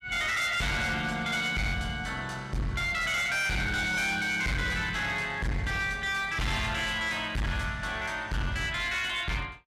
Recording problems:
distorted audio; hard clipping, signal-to-distortion ratio 7 dB

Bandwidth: 14 kHz